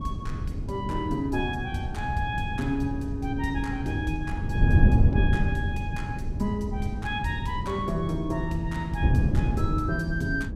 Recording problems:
wind on the microphone; below 140 Hz, SNR -2 dB

